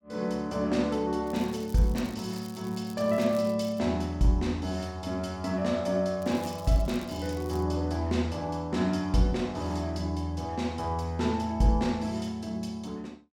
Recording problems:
crackling; from 1.5 to 4 s and from 6 to 7.5 s; loose cable, SNR 21 dB

